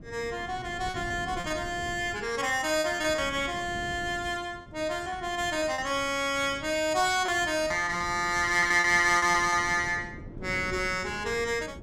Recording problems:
wind noise; below 310 Hz, SNR 17 dB
packet loss; 5% of the sound replaced, filled with repeated pitch periods

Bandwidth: 16 kHz